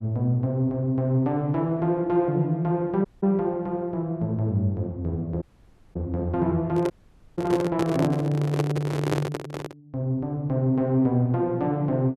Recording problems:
audio cutting out; at 3 s, at 5.5 s for 0.5 s and at 7 s
handling noise; from 6.5 to 10 s; peak +3 dB vs average level

